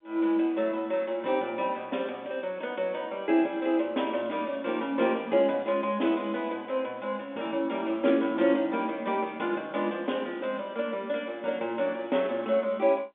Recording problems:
phone line; 240 Hz to 3.6 kHz, G.711

